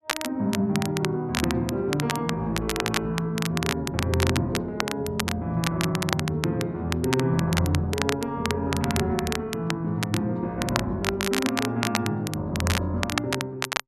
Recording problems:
crackle; vinyl, SNR 4 dB

